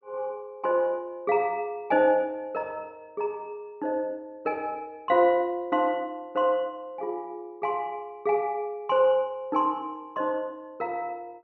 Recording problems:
low-pass filter; nothing above 5.9 kHz

